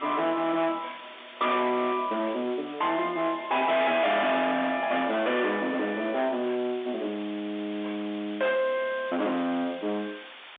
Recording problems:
phone line; 260 Hz to 3.7 kHz, G.711
distorted audio; soft clipping, signal-to-distortion ratio 6 dB
hiss; SNR 17 dB

